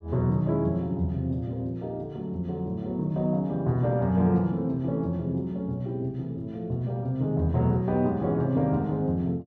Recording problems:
none

